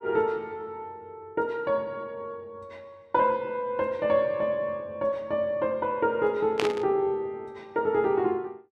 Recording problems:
burst of static; at 6.5 s; peak +3 dB vs average level

